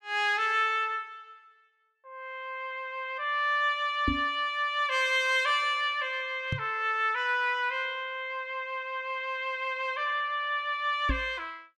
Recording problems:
microphone bump; at 4 s, at 6.5 s and at 11 s; peak +3 dB vs average level

